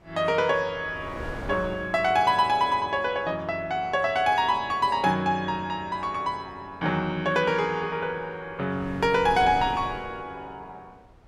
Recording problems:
wind noise; below 610 Hz, SNR 16 dB

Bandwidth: 16 kHz